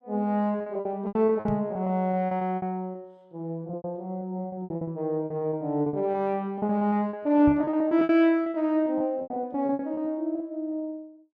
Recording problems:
lost packets; 18% of the sound replaced, filled with repeated pitch periods
microphone bump; at 1.5 s and at 7.5 s; peak -2 dB vs average level

